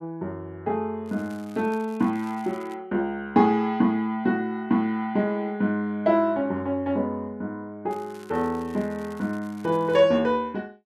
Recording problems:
crackle; from 1 to 2.5 s and from 8 to 10 s; loose cable, SNR 27 dB

